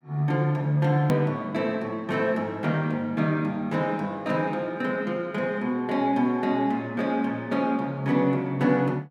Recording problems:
edit click; at 1 s

